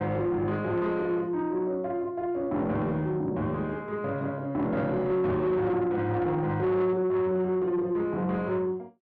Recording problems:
distortion; soft clipping, signal-to-distortion ratio 12 dB

